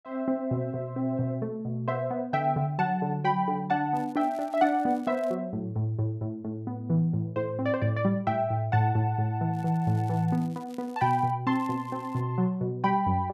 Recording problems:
crackle; from 4 to 5.5 s, from 9.5 to 11 s and at 12 s; loose cable, SNR 29 dB

